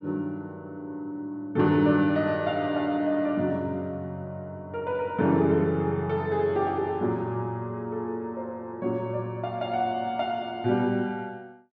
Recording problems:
none

